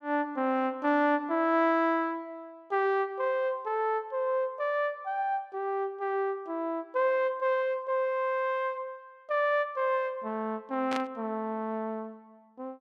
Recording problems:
static burst; at 11 s; peak -3 dB vs average level

